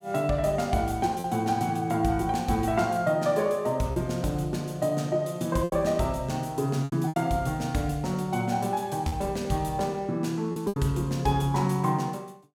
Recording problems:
lost packets; 4% of the sound replaced, filled with repeated pitch periods

